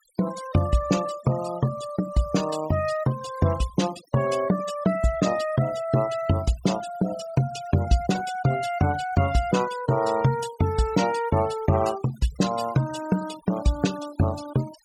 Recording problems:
noise reduction artefacts; signal-to-artefact ratio 16 dB

